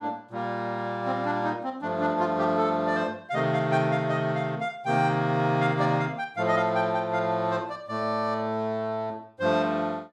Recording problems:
none

